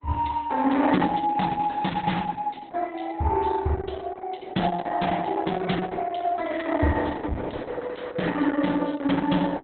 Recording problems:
lossy compression; Opus, log-spectral distance 5 dB, nothing above 3.9 kHz

